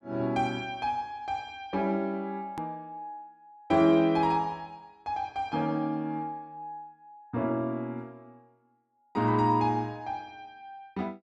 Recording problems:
click at an edit; at 2.5 s

